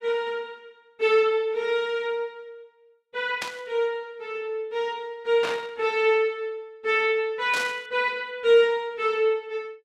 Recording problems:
burst of static; at 3.5 s, at 5.5 s and at 7.5 s; peak -2 dB vs average level

